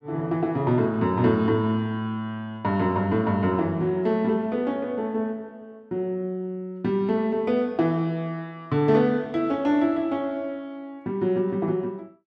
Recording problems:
none

